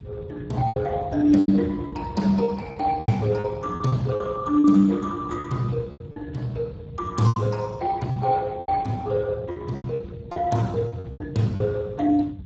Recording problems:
lossy codec; Speex, log-spectral distance 3 dB
rumble; below 170 Hz, SNR 15 dB
packet loss; 11% of the sound replaced, filled with repeated pitch periods

